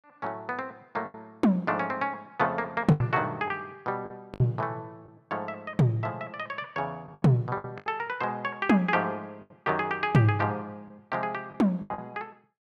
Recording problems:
lost packets; 7% of the sound replaced, filled with the last packet

